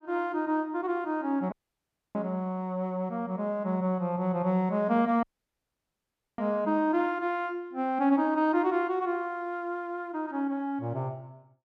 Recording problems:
audio cutting out; at 1.5 s for 0.5 s and at 5 s for 1 s

